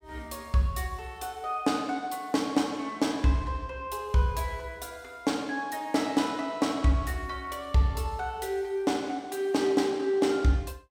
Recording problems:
none

